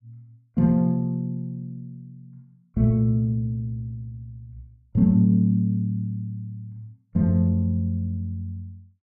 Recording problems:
none

